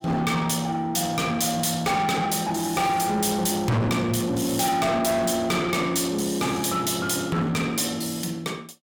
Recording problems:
distortion; soft clipping, signal-to-distortion ratio 7 dB

